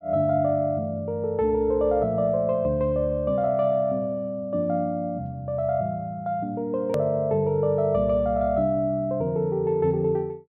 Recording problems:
click at an edit; at 7 s

